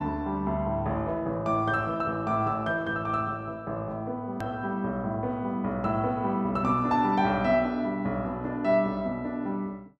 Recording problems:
edit click; at 4.5 s

